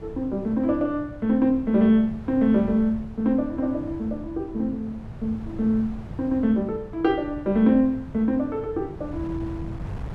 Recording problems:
wind noise; below 170 Hz, SNR 15 dB

